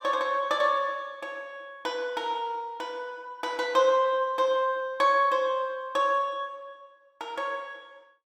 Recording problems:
none

